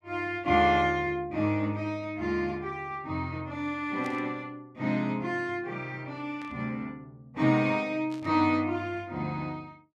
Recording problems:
burst of static; at 4 s, at 6.5 s and at 8 s; peak -14 dB vs average level

